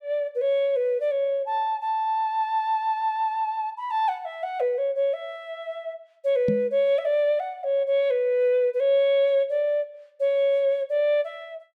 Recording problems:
knock on the microphone; at 6.5 s; peak +1 dB vs average level

